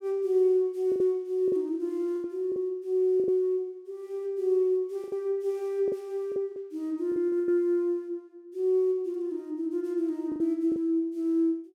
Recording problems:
packet loss; 7% of the sound replaced, filled with the last packet

